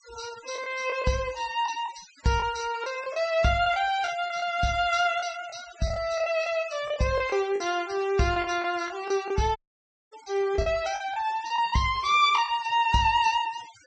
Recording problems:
treble cut off; nothing above 8 kHz
denoising artefacts; signal-to-artefact ratio 18 dB
packet loss; 7% of the sound replaced, filled with the last packet
audio cutting out; at 9.5 s for 0.5 s

